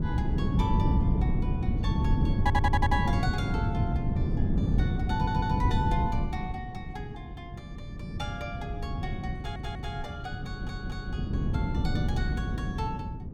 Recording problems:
wind on the microphone; below 180 Hz, SNR -6 dB
audio stuttering; 4 times, first at 2.5 s

